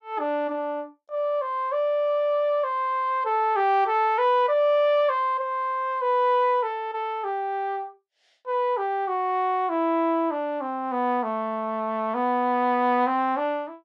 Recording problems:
none

